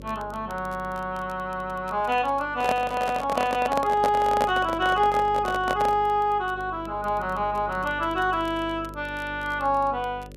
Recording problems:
hum; 50 Hz, harmonics up to 600 Hz, SNR 18 dB
crackle; vinyl, SNR 29 dB
microphone handling noise; from 2.5 to 6 s; peak +2 dB vs average level

